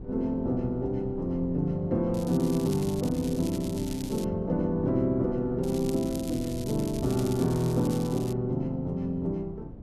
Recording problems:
wind noise; below 250 Hz, SNR 13 dB
crackle; from 2 to 4 s and from 5.5 to 8.5 s; loose cable, SNR 16 dB

